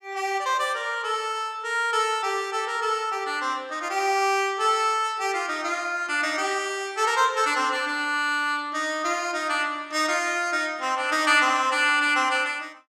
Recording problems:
none

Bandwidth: 14.5 kHz